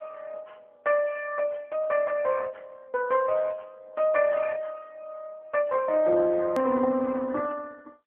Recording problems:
phone line; 190 Hz to 3.6 kHz, AMR-NB
edit click; at 6.5 s

